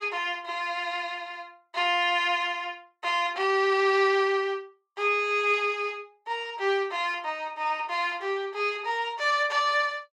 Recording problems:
none

